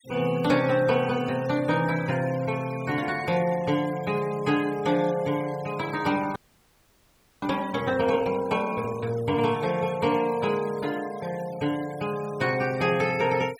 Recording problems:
noise reduction artefacts; signal-to-artefact ratio 19 dB
frozen audio; at 6.5 s for 1 s

